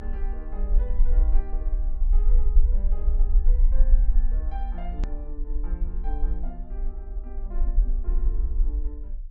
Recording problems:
treble cut off; nothing above 8 kHz
rumble; below 40 Hz, strongest tone 28 Hz, SNR -17 dB
edit click; at 5 s

